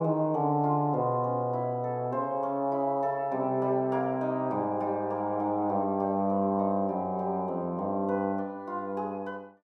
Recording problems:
none

